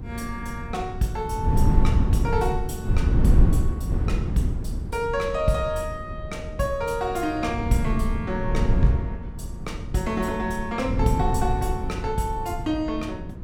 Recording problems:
hum; 50 Hz, harmonics up to 400 Hz, SNR 20 dB
wind noise; below 130 Hz, SNR 0 dB

